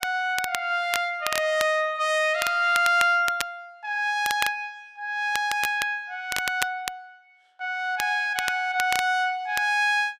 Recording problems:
crackle; vinyl, SNR 9 dB

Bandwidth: 15 kHz